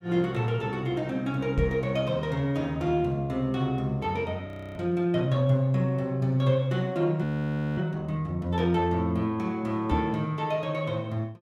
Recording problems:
knock on the microphone; at 1.5 s and at 10 s; peak +3 dB vs average level
audio freezing; at 4.5 s and at 7 s for 0.5 s

